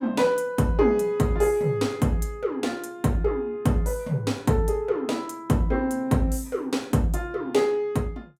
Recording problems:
none

